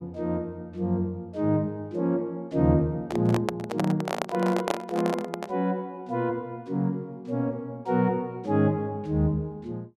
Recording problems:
handling noise; from 3 to 5.5 s; peak +5 dB vs average level

